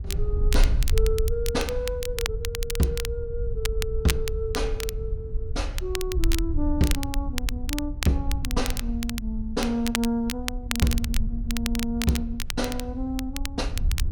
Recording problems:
wind on the microphone; below 64 Hz, SNR 2 dB
crackle; vinyl, SNR 5 dB

